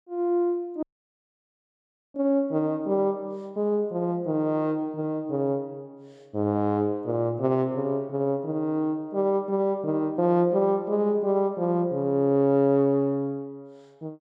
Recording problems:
dropout; at 1 s for 1.5 s

